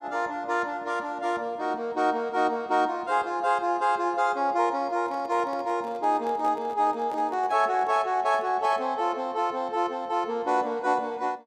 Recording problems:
microphone handling noise; from 5 to 9 s; peak -10 dB vs average level

